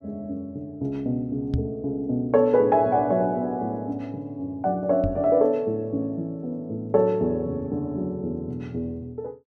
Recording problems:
microphone thump; at 1.5 s and at 5 s; peak +3 dB vs average level

